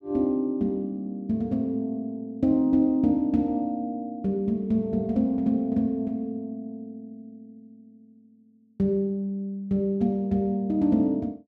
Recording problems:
none

